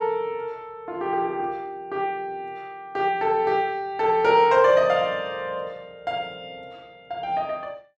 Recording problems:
none

